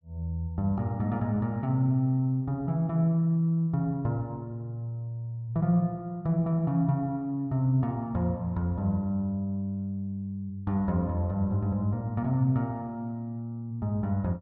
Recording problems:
none

